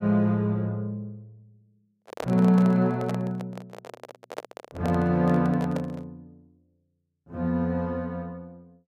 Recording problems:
microphone handling noise; from 2 to 6 s; peak -4 dB vs average level

